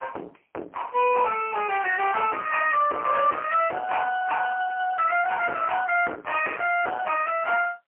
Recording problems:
telephone audio; 300 Hz to 2.9 kHz, AMR-NB, then MP3
distortion; soft clipping, signal-to-distortion ratio 10 dB

